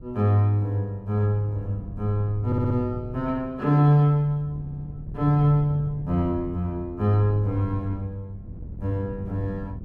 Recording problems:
wind noise; below 150 Hz, SNR 16 dB
audio stuttering; at 2.5 s and at 4.5 s

